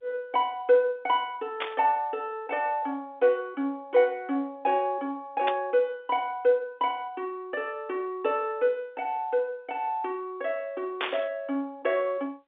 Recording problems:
telephone audio; 300 Hz to 4 kHz, G.711
burst of static; at 1.5 s, at 5.5 s and at 11 s; peak +2 dB vs average level

